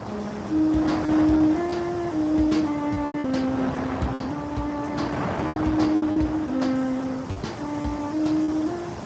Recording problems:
codec artefacts; Speex, log-spectral distance 4 dB, nothing above 16.5 kHz
background hiss; slope -1 dB per octave, SNR 25 dB
wind noise; below 1 kHz, SNR 7 dB
packet loss; 6% of the sound replaced, filled with repeated pitch periods

